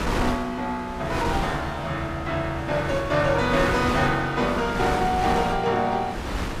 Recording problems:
wind noise; below 1.2 kHz, SNR 6 dB

